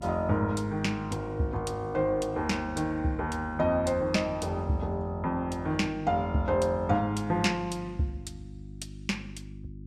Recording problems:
hum; 50 Hz, harmonics up to 350 Hz, SNR 15 dB

